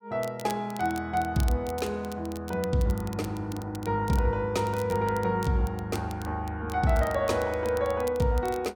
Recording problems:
crackling; vinyl, SNR 19 dB

